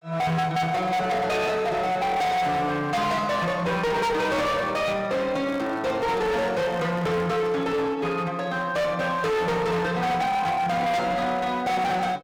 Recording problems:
distortion; hard clipping, uneven, signal-to-distortion ratio 6 dB
handling noise; from 5.5 to 8 s; peak -8 dB vs average level

